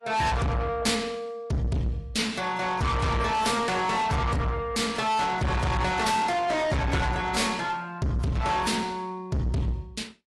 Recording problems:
codec artefacts; AAC, then AAC, log-spectral distance 3 dB, nothing above 11.3 kHz
distorted audio; soft clipping, signal-to-distortion ratio 6 dB

